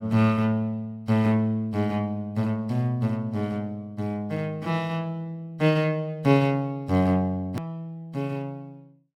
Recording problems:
click at an edit; at 7.5 s

